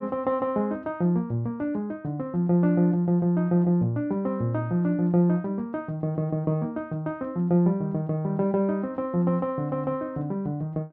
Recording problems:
none

